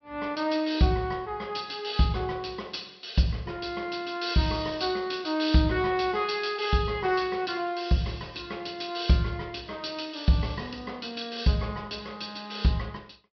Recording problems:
treble missing; nothing above 5.5 kHz

